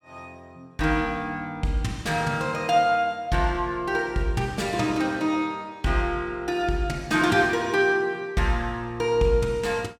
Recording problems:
none

